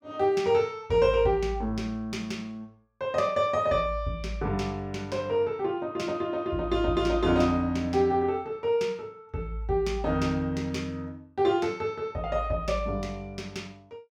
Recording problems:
none

